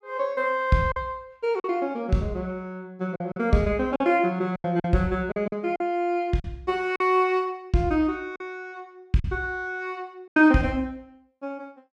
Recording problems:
packet loss; 5% of the sound replaced, filled with silence

